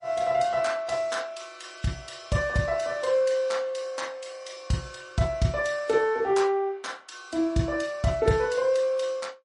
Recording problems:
codec artefacts; MP3, log-spectral distance 2 dB, nothing above 10.4 kHz

